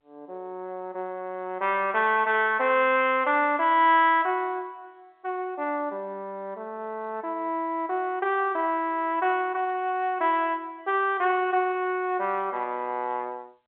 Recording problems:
telephone audio; 220 Hz to 3.6 kHz, G.711

